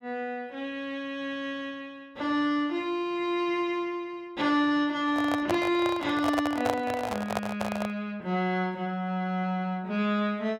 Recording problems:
handling noise; from 5 to 8 s; peak +4 dB vs average level

